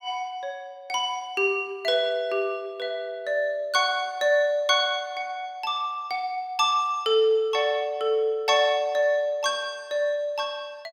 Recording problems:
none

